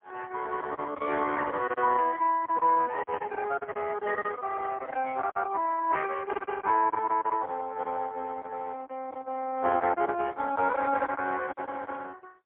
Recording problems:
telephone audio; 260 Hz to 2.9 kHz, AMR-NB, then MP3
lost packets; 7% of the sound replaced, filled with silence

